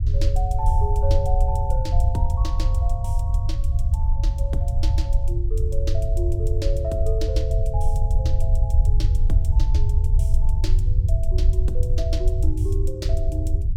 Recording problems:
low-frequency rumble; below 76 Hz, SNR -10 dB

